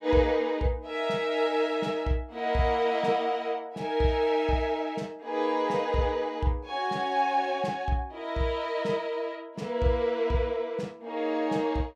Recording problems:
none

